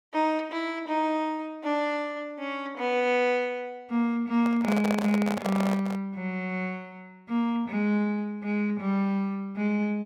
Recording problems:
handling noise; from 4.5 to 6 s; peak +1 dB vs average level

